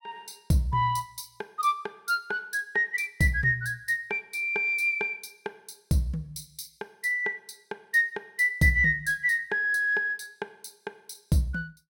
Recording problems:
none

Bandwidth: 17.5 kHz